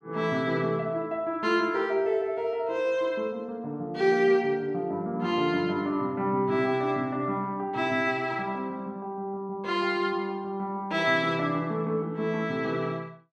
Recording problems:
none

